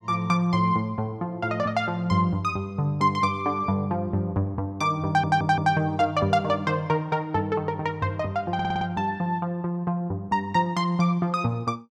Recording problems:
stutter; at 5 s and at 8.5 s

